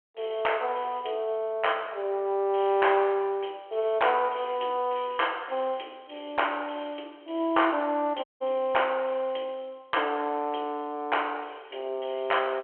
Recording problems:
telephone audio; 300 Hz to 3.3 kHz, G.726
dropout; at 8 s

